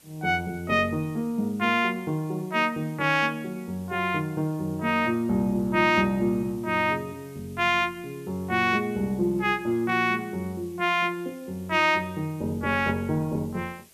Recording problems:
background hiss; SNR 27 dB

